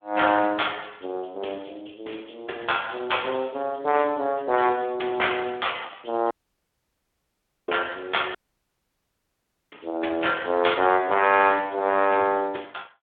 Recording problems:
telephone audio; 280 Hz to 3.4 kHz, Speex
audio cutting out; at 6.5 s for 1.5 s and at 8.5 s for 1.5 s

